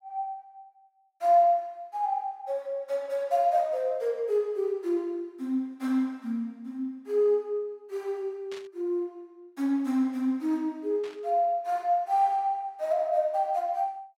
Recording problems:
burst of static; at 8.5 s and at 11 s; peak -13 dB vs average level

